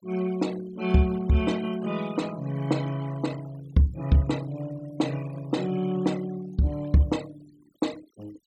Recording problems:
noise reduction artefacts; signal-to-artefact ratio 19 dB

